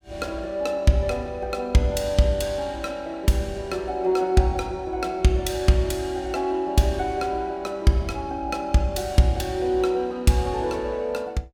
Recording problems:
none

